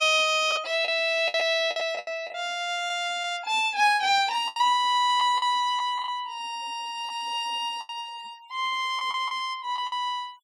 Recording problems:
denoising artefacts; signal-to-artefact ratio 25 dB
lost packets; 8% of the sound replaced, filled with the last packet

